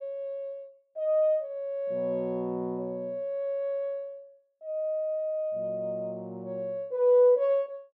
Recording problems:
none

